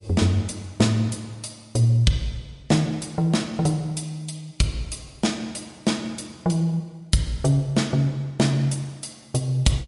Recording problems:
codec artefacts; MP3, log-spectral distance 4 dB, nothing above 11 kHz

